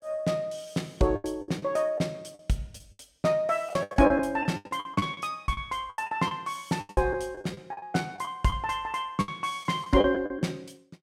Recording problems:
packet loss; 15% of the sound replaced, filled with the last packet

